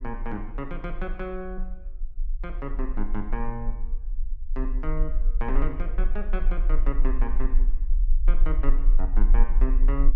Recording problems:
rumble; below 34 Hz, strongest tone 22 Hz, SNR -7 dB

